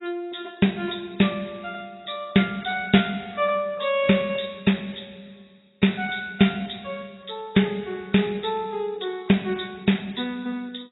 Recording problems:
codec artefacts; AAC, log-spectral distance 8 dB, nothing above 3.8 kHz

